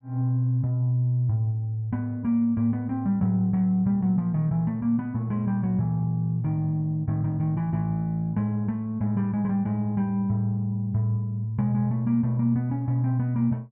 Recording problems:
none

